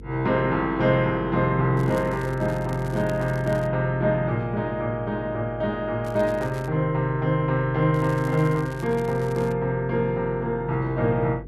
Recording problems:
hum; 50 Hz, harmonics up to 500 Hz, SNR 18 dB
crackle; from 2 to 3.5 s, at 6 s and from 8 to 9.5 s; loose cable, SNR 24 dB

